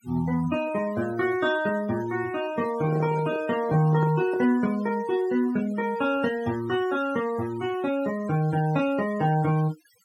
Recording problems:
denoising artefacts; signal-to-artefact ratio 18 dB
handling noise; from 2.5 to 4.5 s; peak -4 dB vs average level

